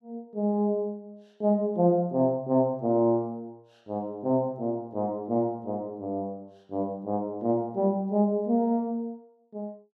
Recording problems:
none

